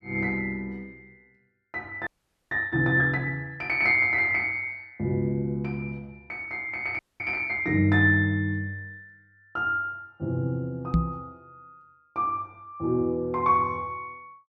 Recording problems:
frozen audio; at 2 s and at 7 s
microphone thump; at 11 s; peak +6 dB vs average level

